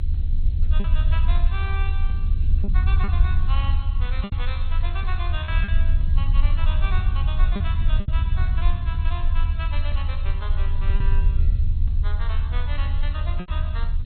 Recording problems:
lossy codec; MP2, log-spectral distance 2 dB, nothing above 3.9 kHz
background hiss; SNR 23 dB
low-frequency rumble; below 76 Hz, strongest tone 22 Hz, SNR -12 dB
packet loss; 4% of the sound replaced, filled with repeated pitch periods

